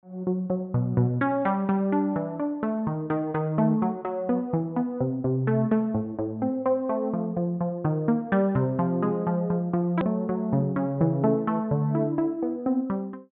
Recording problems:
low-pass filter; nothing above 4 kHz
click at an edit; at 10 s

